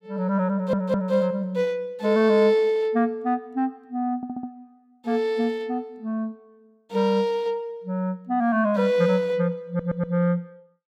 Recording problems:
stutter; at 0.5 s, at 4 s and at 9.5 s

